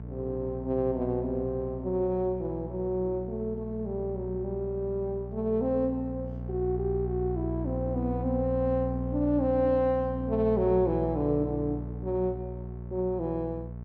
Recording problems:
electrical hum; 60 Hz, harmonics up to 660 Hz, SNR 7 dB

